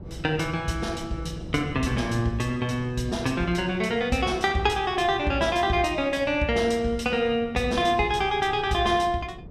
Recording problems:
wind noise; below 220 Hz, SNR 16 dB

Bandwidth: 15 kHz